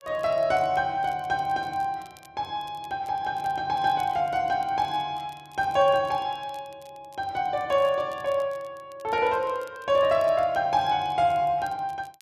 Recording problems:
crackle; vinyl, SNR 29 dB

